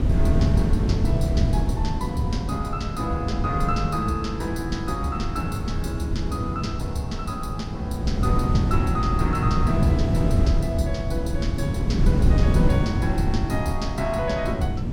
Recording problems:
electrical hum; 60 Hz, harmonics up to 1.1 kHz, SNR 24 dB
wind on the microphone; below 170 Hz, SNR -4 dB

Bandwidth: 17 kHz